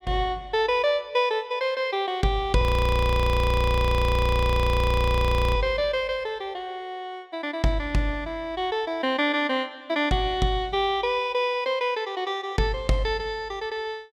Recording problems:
audio freezing; at 2.5 s for 3 s

